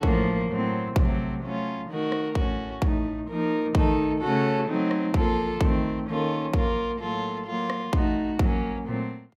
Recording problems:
none

